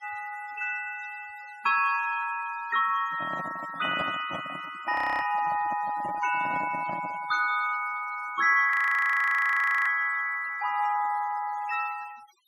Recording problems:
denoising artefacts; signal-to-artefact ratio 19 dB
handling noise; from 3 to 7.5 s; peak -4 dB vs average level
frozen audio; at 5 s and at 8.5 s for 1 s

